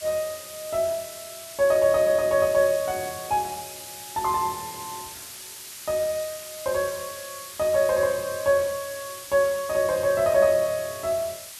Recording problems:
hiss; slope +3 dB per octave, SNR 13 dB

